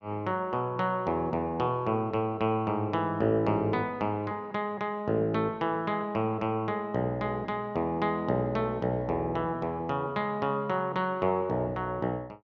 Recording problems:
none

